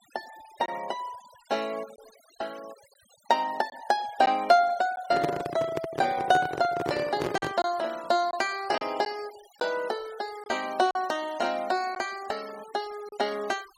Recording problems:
denoising artefacts; signal-to-artefact ratio 20 dB
lost packets; 3% of the sound replaced, filled with silence
microphone handling noise; from 5 to 7.5 s; peak +3 dB vs average level

